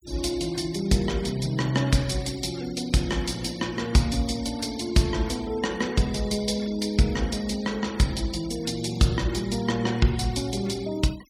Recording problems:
denoising artefacts; signal-to-artefact ratio 19 dB

